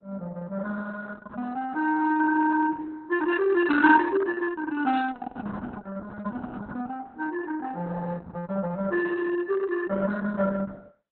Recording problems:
codec artefacts; Opus, log-spectral distance 4 dB, nothing above 4.1 kHz

